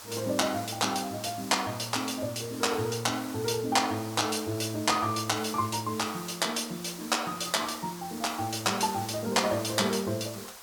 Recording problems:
background hiss; SNR 13 dB

